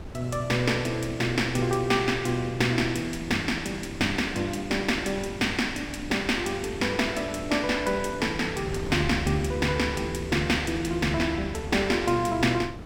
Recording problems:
wind on the microphone; below 320 Hz, SNR 14 dB

